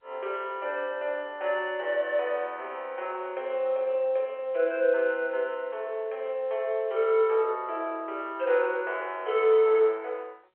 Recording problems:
telephone audio; 340 Hz to 3.3 kHz, G.711

